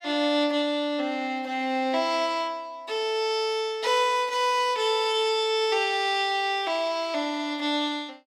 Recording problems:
none

